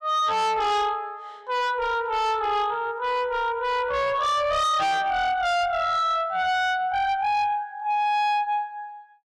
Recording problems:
distortion; soft clipping, signal-to-distortion ratio 8 dB

